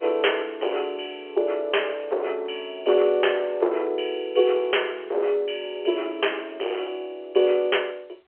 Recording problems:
phone line; 320 Hz to 3.2 kHz, G.711
distorted audio; hard clipping, signal-to-distortion ratio 15 dB

